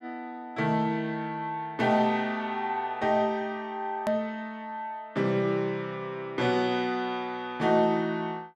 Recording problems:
edit click; at 4 s

